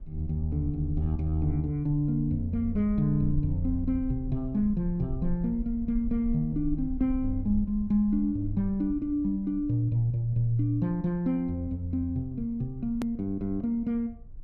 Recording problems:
rumble; below 54 Hz, SNR 13 dB
click at an edit; at 13 s

